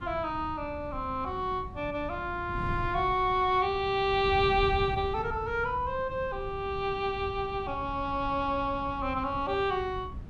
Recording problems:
wind on the microphone; below 150 Hz, SNR 12 dB

